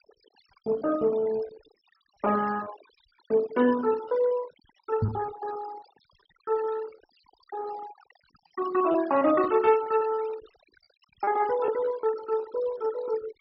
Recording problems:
treble cut off; nothing above 5.4 kHz
denoising artefacts; signal-to-artefact ratio 15 dB
packet loss; 10% of the sound replaced, filled with repeated pitch periods
microphone thump; at 5 s; peak +4 dB vs average level

